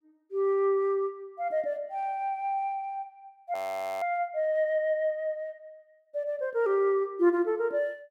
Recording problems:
audio freezing; at 3.5 s

